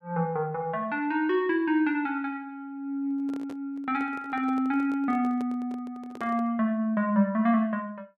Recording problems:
handling noise; from 3 to 6.5 s; peak -10 dB vs average level

